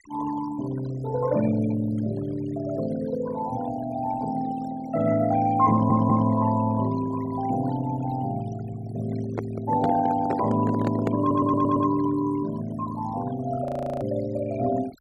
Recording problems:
noise reduction artefacts; signal-to-artefact ratio 17 dB
stutter; at 5.5 s and at 11 s
handling noise; from 9.5 to 12 s; peak +1 dB vs average level
audio freezing; at 14 s

